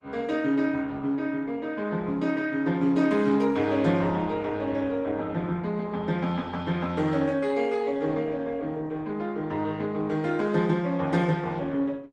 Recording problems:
codec artefacts; Opus, log-spectral distance 3 dB, nothing above 11.6 kHz

